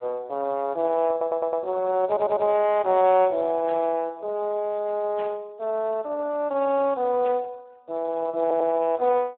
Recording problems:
telephone audio; 260 Hz to 3.1 kHz, Speex
audio stuttering; at 1 s, at 2 s and at 8.5 s
static burst; at 3.5 s, at 5 s and at 7 s; peak -14 dB vs average level

